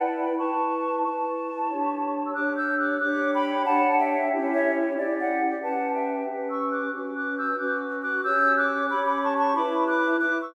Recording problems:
none

